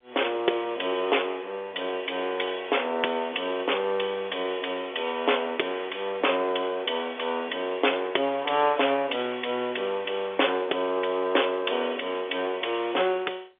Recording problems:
telephone audio; 320 Hz to 3.6 kHz, G.711

